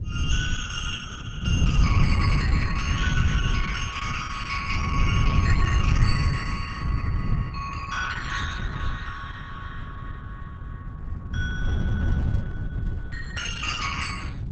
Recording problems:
lossy compression; Opus, log-spectral distance 5 dB
wind on the microphone; below 130 Hz, SNR -5 dB

